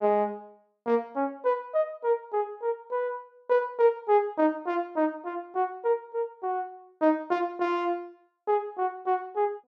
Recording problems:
none

